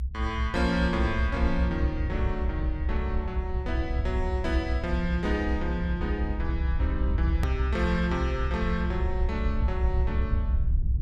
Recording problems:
rumble; below 68 Hz, SNR -2 dB
edit click; at 7.5 s

